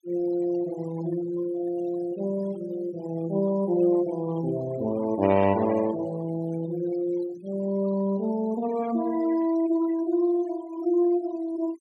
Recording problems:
noise reduction artefacts; signal-to-artefact ratio 19 dB

